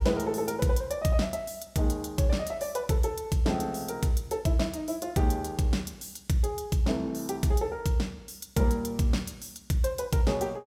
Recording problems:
none

